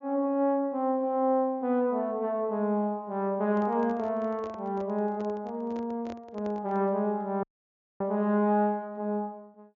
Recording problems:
low-pass filter; nothing above 7.3 kHz
microphone handling noise; from 3.5 to 7 s; peak -12 dB vs average level
audio cutting out; at 7.5 s for 0.5 s

